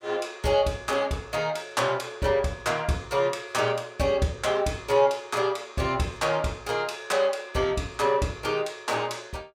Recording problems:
none

